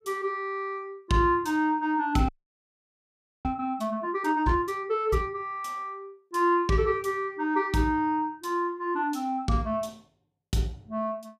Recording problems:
frozen audio; at 2.5 s for 1 s

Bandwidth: 15 kHz